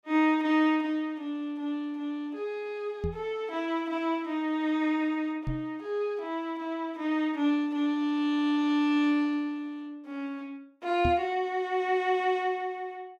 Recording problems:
microphone bump; at 3 s, at 5.5 s and at 11 s; peak +2 dB vs average level

